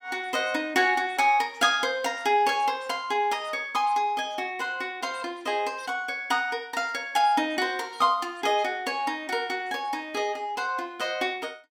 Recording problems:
none

